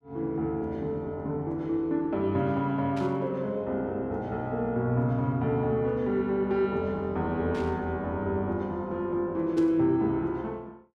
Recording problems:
static burst; at 3 s, at 7.5 s and at 9.5 s; peak -12 dB vs average level

